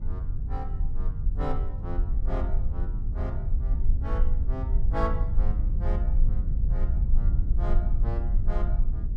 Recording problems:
low-frequency rumble; below 56 Hz, strongest tone 20 Hz, SNR -10 dB

